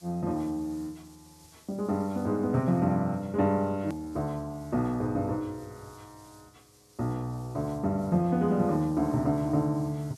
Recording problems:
hiss; SNR 27 dB
edit click; at 4 s

